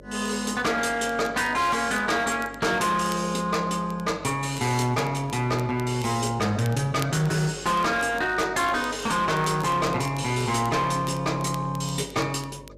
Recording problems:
distortion; hard clipping, signal-to-distortion ratio 11 dB
hum; 50 Hz, harmonics up to 600 Hz, SNR 21 dB
crackle; vinyl, SNR 22 dB

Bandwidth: 14.5 kHz